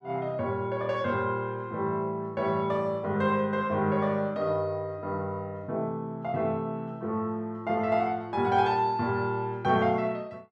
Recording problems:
none

